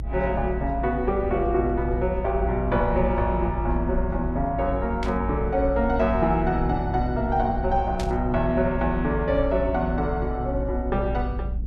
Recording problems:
rumble; below 72 Hz, strongest tone 54 Hz, SNR 6 dB
burst of static; at 5 s and at 8 s; peak -7 dB vs average level

